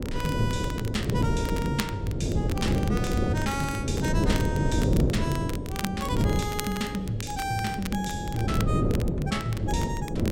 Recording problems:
wind noise; below 320 Hz, SNR -2 dB
crackling; vinyl, SNR 10 dB

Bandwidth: 16 kHz